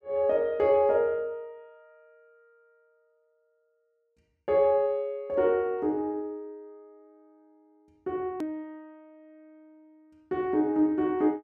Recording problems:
hard cut with a click; at 8.5 s

